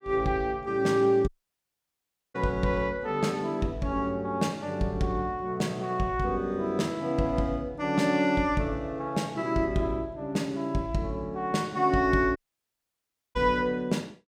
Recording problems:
audio cutting out; at 1.5 s for 1 s and at 12 s for 1 s

